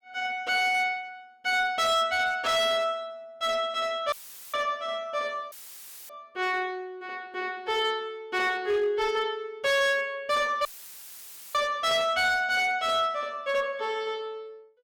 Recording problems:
distorted audio; hard clipping, signal-to-distortion ratio 11 dB
dropout; at 4 s, at 5.5 s for 0.5 s and at 11 s for 1 s; filled with static

